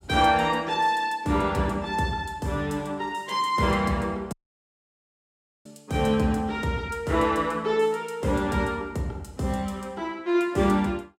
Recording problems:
dropout; at 4.5 s for 1.5 s

